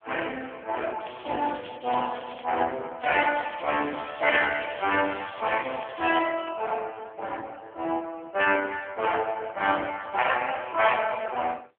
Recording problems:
telephone audio; 300 Hz to 3.3 kHz, AMR-NB
crackle; from 1 to 2.5 s and from 3 to 6.5 s; loose cable, SNR 18 dB

